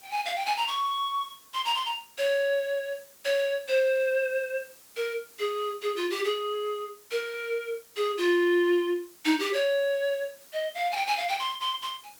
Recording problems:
background hiss; slope -1 dB per octave, SNR 23 dB

